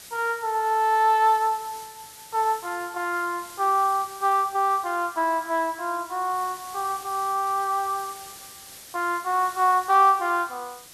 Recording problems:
background hiss; slope +1 dB per octave, SNR 18 dB

